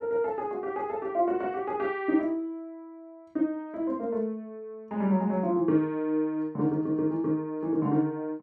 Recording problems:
none

